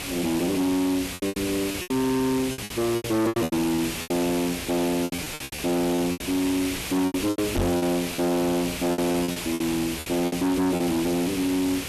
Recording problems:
distorted audio; hard clipping, signal-to-distortion ratio 8 dB
mains hum; 60 Hz, harmonics up to 420 Hz, SNR 20 dB
background hiss; SNR 7 dB
lost packets; 12% of the sound replaced, filled with repeated pitch periods
knock on the microphone; at 7.5 s; peak +3 dB vs average level

